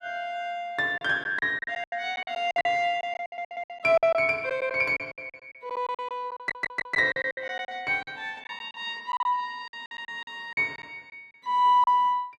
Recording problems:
lost packets; 14% of the sound replaced, filled with silence
audio stuttering; at 3 s and at 6.5 s

